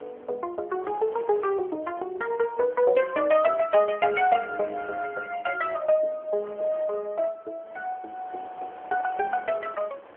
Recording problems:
phone line; 320 Hz to 3 kHz, AMR-NB
wind on the microphone; below 1.2 kHz, SNR 22 dB

